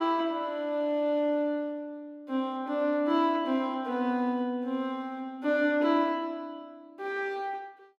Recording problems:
none

